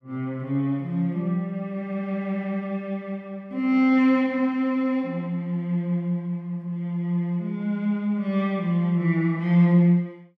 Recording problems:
none

